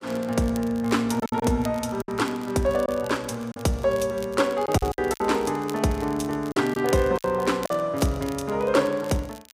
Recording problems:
crackling; vinyl, SNR 21 dB
lost packets; 6% of the sound replaced, filled with silence

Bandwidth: 15.5 kHz